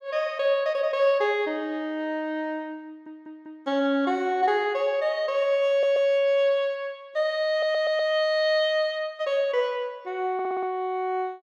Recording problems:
stutter; 4 times, first at 3 s

